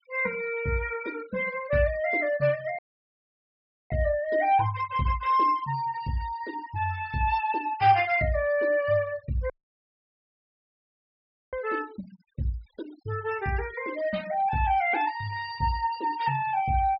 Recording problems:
low-pass filter; nothing above 5.4 kHz
denoising artefacts; signal-to-artefact ratio 20 dB
audio cutting out; at 3 s for 1 s and at 9.5 s for 2 s

